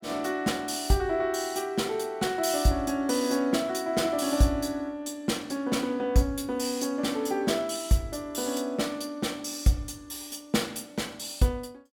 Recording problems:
none

